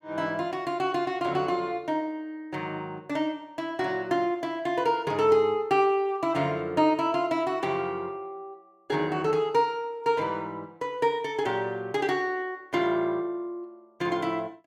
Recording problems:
none

